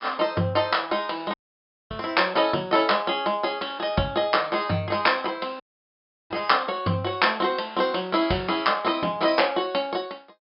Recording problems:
treble missing; nothing above 5.5 kHz
dropout; at 1.5 s for 0.5 s and at 5.5 s for 0.5 s

